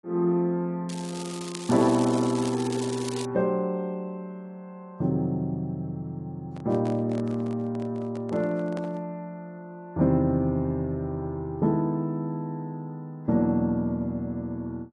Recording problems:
lossy compression; AAC, log-spectral distance 2 dB
crackle; from 1 to 3.5 s; loose cable, SNR 12 dB
microphone handling noise; from 6.5 to 9 s; peak -6 dB vs average level

